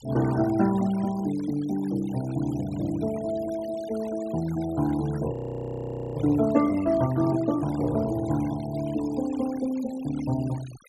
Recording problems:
noise reduction artefacts; signal-to-artefact ratio 19 dB
audio freezing; at 5.5 s for 1 s

